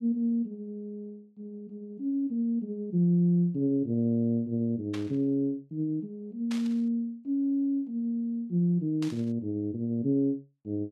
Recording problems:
burst of static; at 5 s, at 6.5 s and at 9 s; peak -8 dB vs average level

